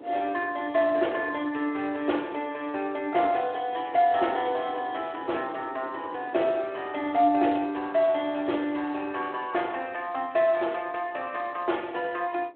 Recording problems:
phone line; 260 Hz to 3.5 kHz, Speex
wind noise; below 530 Hz, SNR 19 dB

